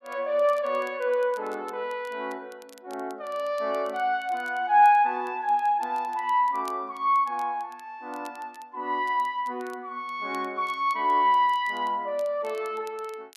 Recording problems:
crackling; vinyl, SNR 29 dB

